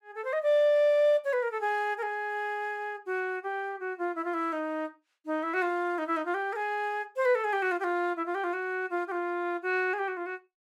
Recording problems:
none

